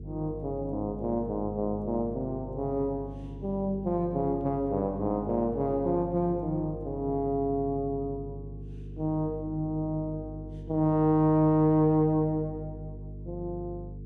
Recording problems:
hum; 50 Hz, harmonics up to 450 Hz, SNR 13 dB

